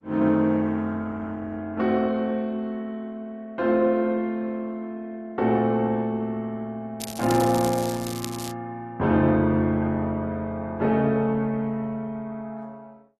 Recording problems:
codec artefacts; Opus, log-spectral distance 2 dB
crackle; from 7 to 8.5 s; loose cable, SNR 11 dB

